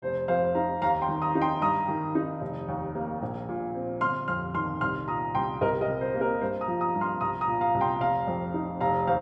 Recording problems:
none

